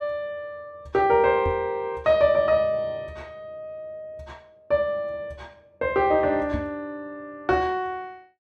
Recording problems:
microphone bump; at 1.5 s and at 6.5 s; peak -3 dB vs average level

